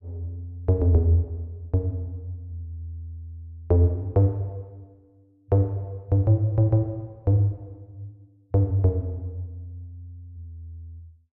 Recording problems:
none

